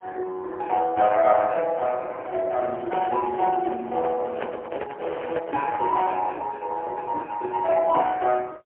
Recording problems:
phone line; 260 Hz to 3.4 kHz, AMR-NB, then MP3
microphone handling noise; from 2.5 to 6 s; peak 0 dB vs average level

